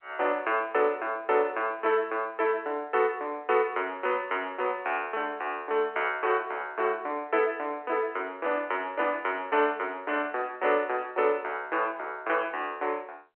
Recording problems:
phone line; 320 Hz to 3.1 kHz, G.711

